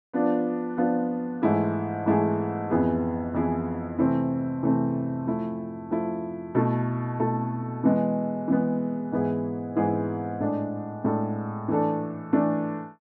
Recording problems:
none

